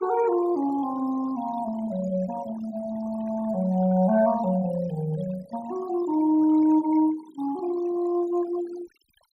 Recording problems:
noise reduction artefacts; signal-to-artefact ratio 18 dB

